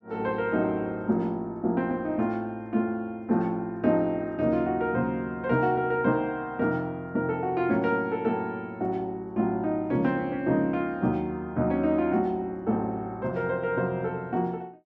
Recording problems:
none

